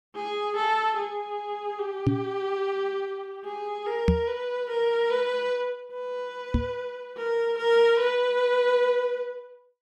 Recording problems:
microphone thump; at 2 s, at 4 s and at 6.5 s; peak +8 dB vs average level

